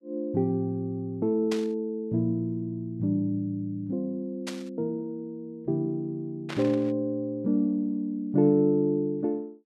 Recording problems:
static burst; at 1.5 s, at 4.5 s and at 6.5 s; peak -4 dB vs average level

